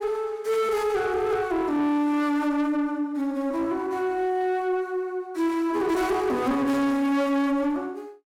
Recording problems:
distorted audio; soft clipping, signal-to-distortion ratio 11 dB

